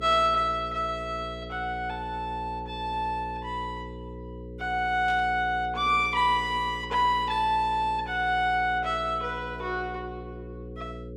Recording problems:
electrical hum; 60 Hz, harmonics up to 540 Hz, SNR 13 dB
static burst; at 5 s; peak -13 dB vs average level

